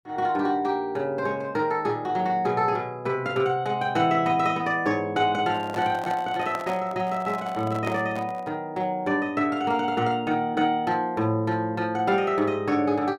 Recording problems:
microphone handling noise; from 5.5 to 8.5 s; peak -5 dB vs average level

